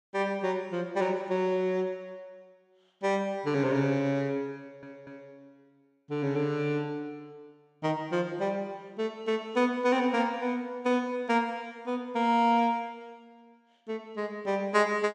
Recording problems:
audio stuttering; at 4.5 s

